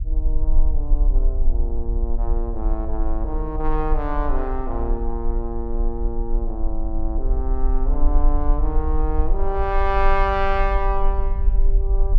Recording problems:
low-frequency rumble; below 42 Hz, strongest tone 18 Hz, SNR -3 dB

